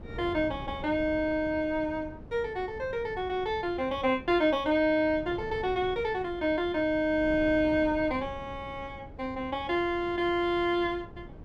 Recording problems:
wind on the microphone; below 310 Hz, SNR 16 dB

